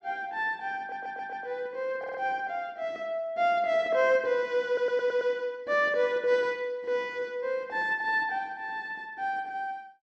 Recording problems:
audio stuttering; at 1 s, at 2 s and at 4.5 s

